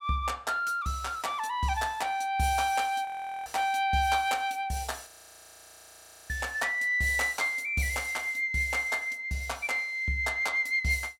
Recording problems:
frozen audio; at 3 s and at 5 s for 1 s

